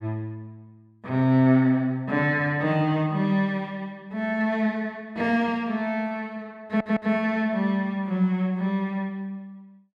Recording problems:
audio stuttering; at 6.5 s

